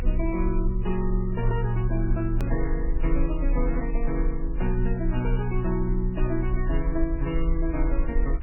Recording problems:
lossy compression; MP3, then AAC, log-spectral distance 2 dB, nothing above 2.8 kHz
rumble; below 40 Hz, strongest tone 32 Hz, SNR 1 dB
click at an edit; at 2.5 s

